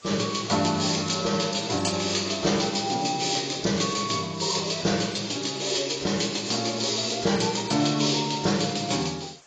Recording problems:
lossy compression; AAC, log-spectral distance 14 dB, nothing above 7.3 kHz
background hiss; slope -1 dB per octave, SNR 27 dB

